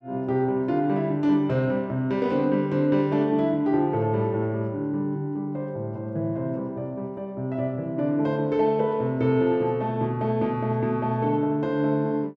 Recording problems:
none

